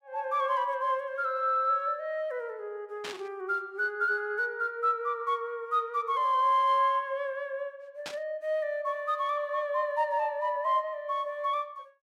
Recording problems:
static burst; at 3 s and at 8 s; peak -4 dB vs average level

